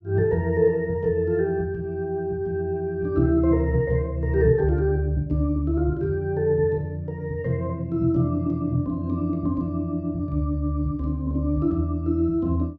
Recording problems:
none

